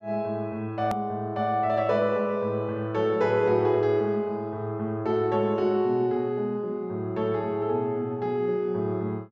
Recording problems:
click at an edit; at 1 s

